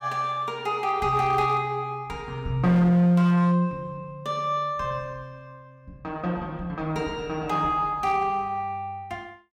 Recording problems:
distorted audio; hard clipping, signal-to-distortion ratio 12 dB

